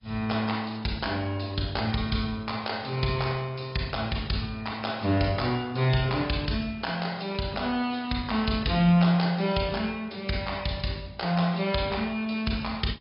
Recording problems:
treble missing; nothing above 5.2 kHz
lossy compression; AAC, log-spectral distance 3 dB

